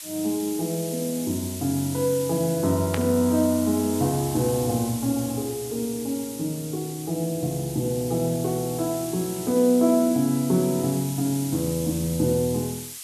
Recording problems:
hiss; slope +4 dB per octave, SNR 10 dB
static burst; at 3 s; peak -2 dB vs average level

